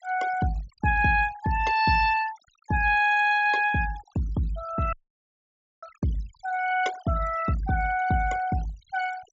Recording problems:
treble cut off; nothing above 8 kHz
noise reduction artefacts; signal-to-artefact ratio 18 dB
dropout; at 5 s for 1 s

